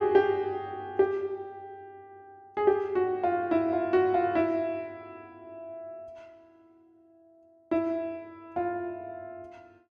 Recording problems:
none

